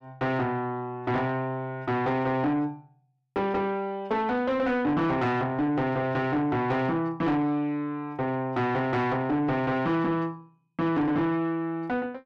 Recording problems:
distortion; soft clipping, signal-to-distortion ratio 9 dB

